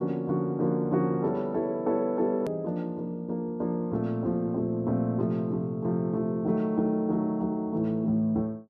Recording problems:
edit click; at 2.5 s

